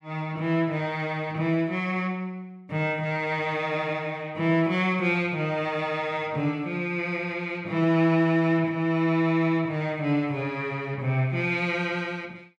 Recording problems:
none

